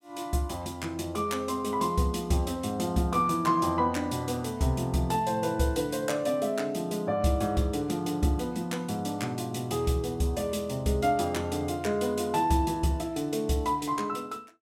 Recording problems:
none

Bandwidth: 16 kHz